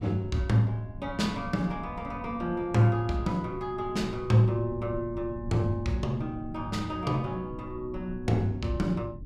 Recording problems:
rumble; below 130 Hz, SNR 15 dB

